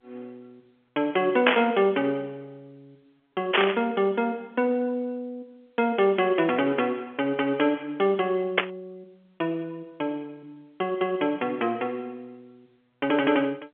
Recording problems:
phone line; 260 Hz to 3.5 kHz, G.711
static burst; at 1.5 s, at 3.5 s and at 8.5 s; peak +10 dB vs average level

